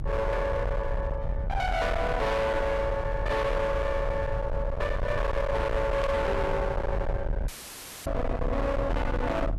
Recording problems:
distortion; hard clipping, signal-to-distortion ratio 6 dB
rumble; below 510 Hz, SNR 3 dB
static burst; at 6 s; peak -8 dB vs average level
audio cutting out; at 7.5 s for 0.5 s; filled with static

